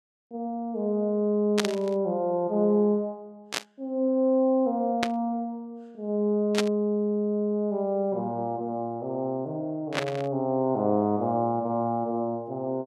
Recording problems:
burst of static; 5 times, first at 1.5 s; peak +4 dB vs average level

